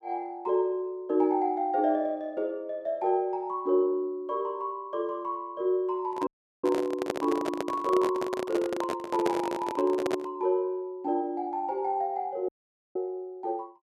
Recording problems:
microphone handling noise; from 6 to 10 s; peak +4 dB vs average level
audio cutting out; at 6.5 s and at 12 s

